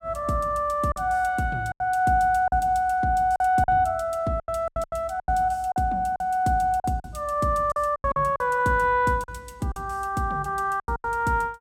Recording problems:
packet loss; 10% of the sound replaced, filled with silence

